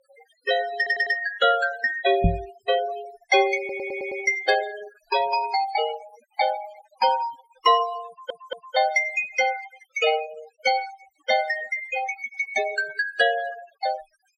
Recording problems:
noise reduction artefacts; signal-to-artefact ratio 14 dB
audio stuttering; at 1 s, at 3.5 s and at 8 s
knock on the microphone; at 2 s; peak +7 dB vs average level

